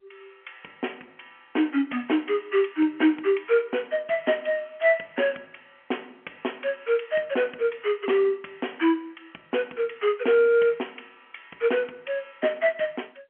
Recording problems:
phone line; 220 Hz to 3.2 kHz, G.711

